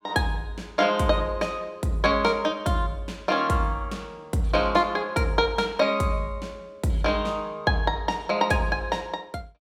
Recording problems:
none

